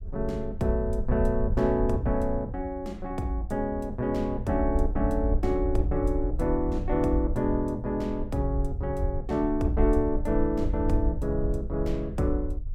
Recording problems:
low-frequency rumble; below 68 Hz, SNR 5 dB

